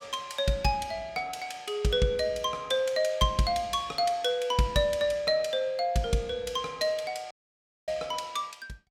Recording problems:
audio cutting out; at 7.5 s for 0.5 s

